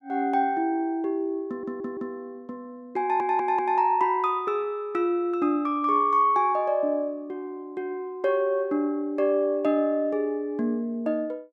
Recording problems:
stutter; at 1.5 s and at 3 s

